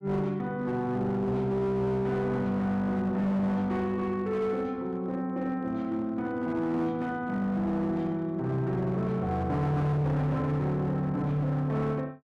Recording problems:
distortion; hard clipping, signal-to-distortion ratio 11 dB

